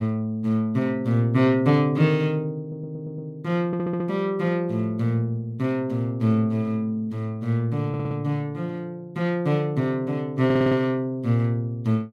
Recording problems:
audio stuttering; 4 times, first at 2.5 s

